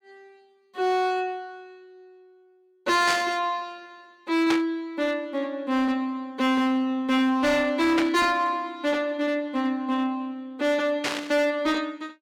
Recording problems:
distortion; hard clipping, signal-to-distortion ratio 11 dB
static burst; 4 times, first at 3 s; peak +1 dB vs average level

